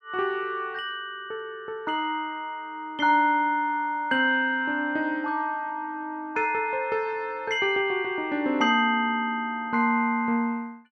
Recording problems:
none

